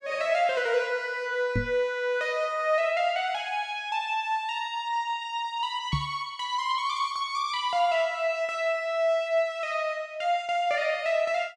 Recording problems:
knock on the microphone; at 1.5 s and at 6 s; peak +3 dB vs average level

